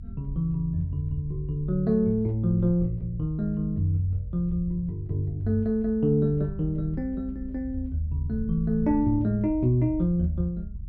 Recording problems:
rumble; below 76 Hz, SNR 12 dB

